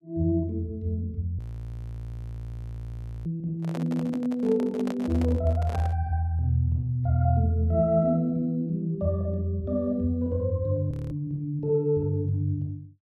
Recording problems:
audio freezing; at 1.5 s for 2 s and at 11 s
handling noise; from 3.5 to 6 s; peak -5 dB vs average level

